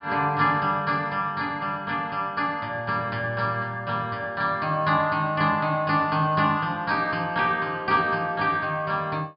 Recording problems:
treble missing; nothing above 5.5 kHz

